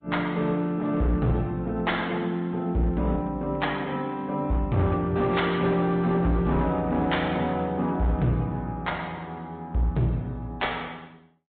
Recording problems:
treble cut off; nothing above 3.9 kHz
lossy compression; MP3, log-spectral distance 2 dB
distorted audio; hard clipping, uneven, signal-to-distortion ratio 10 dB

